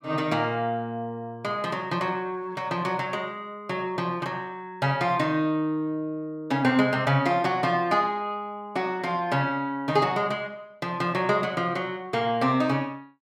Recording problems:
none

